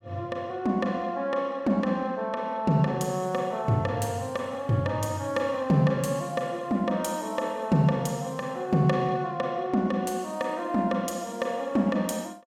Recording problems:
none

